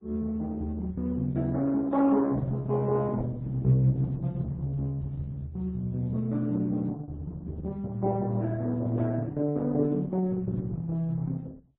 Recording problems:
lossy codec; Opus, then MP3, log-spectral distance 2 dB, nothing above 3.4 kHz

